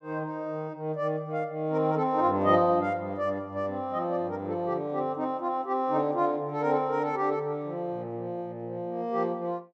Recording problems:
none

